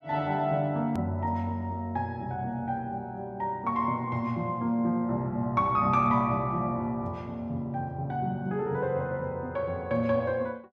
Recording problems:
edit click; at 1 s

